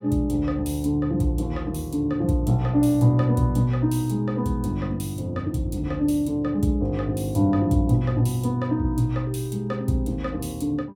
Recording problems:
none

